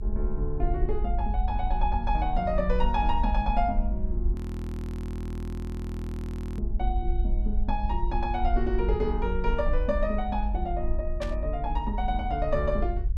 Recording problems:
rumble; below 52 Hz, SNR 0 dB
audio freezing; at 4.5 s for 2 s
static burst; at 11 s; peak -4 dB vs average level

